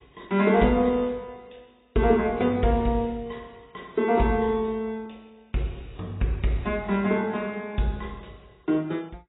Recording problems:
codec artefacts; AAC, log-spectral distance 4 dB, nothing above 3.8 kHz

